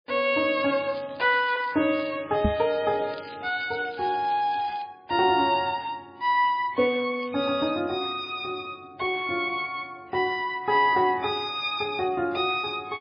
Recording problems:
lossy codec; MP3, log-spectral distance 4 dB
crackle; from 0.5 to 5 s and at 7 s; loose cable, SNR 22 dB
knock on the microphone; at 2.5 s; peak +5 dB vs average level

